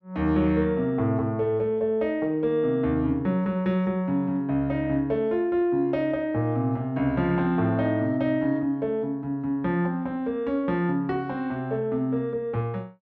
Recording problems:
none

